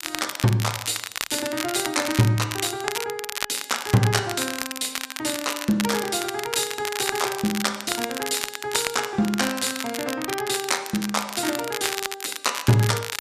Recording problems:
crackle; vinyl, SNR 5 dB

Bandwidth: 14.5 kHz